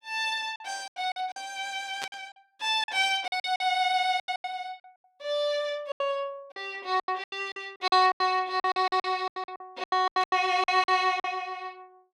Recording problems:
packet loss; 15% of the sound replaced, filled with silence
static burst; at 2 s and at 10 s; peak -3 dB vs average level

